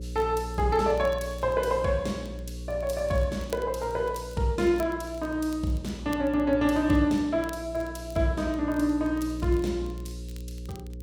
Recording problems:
electrical hum; 60 Hz, harmonics up to 540 Hz, SNR 12 dB
crackle; vinyl, SNR 27 dB

